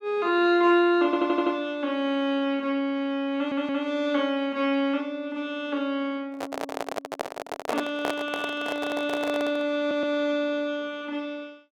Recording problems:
stutter; at 1 s, at 3.5 s and at 10 s
microphone handling noise; from 6.5 to 9.5 s; peak +2 dB vs average level

